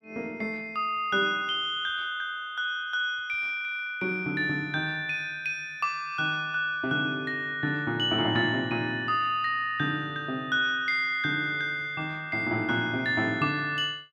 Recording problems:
none

